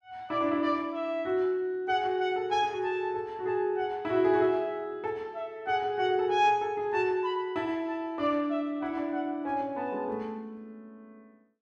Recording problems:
none

